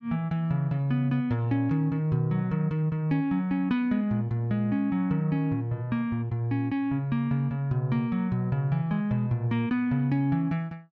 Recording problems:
none

